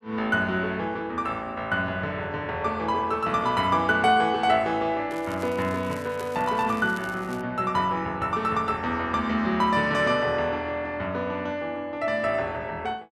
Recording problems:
crackling; from 5 to 7.5 s; loose cable, SNR 22 dB

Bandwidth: 13 kHz